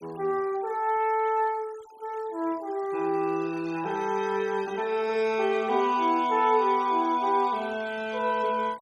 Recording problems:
denoising artefacts; signal-to-artefact ratio 23 dB

